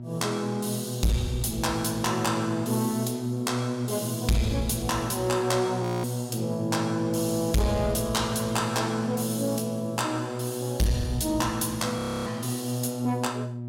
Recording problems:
distortion; soft clipping, signal-to-distortion ratio 6 dB
hum; 60 Hz, harmonics up to 600 Hz, SNR 9 dB
audio freezing; at 6 s and at 12 s

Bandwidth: 16.5 kHz